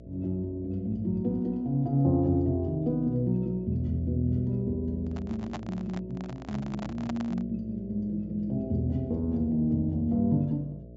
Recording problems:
low-pass filter; nothing above 8 kHz
electrical hum; 60 Hz, harmonics up to 660 Hz, SNR 16 dB
handling noise; from 5 to 7.5 s; peak -4 dB vs average level

